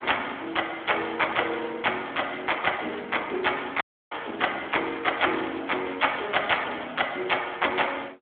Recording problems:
telephone audio; 260 Hz to 3.6 kHz, Speex
dropout; at 4 s

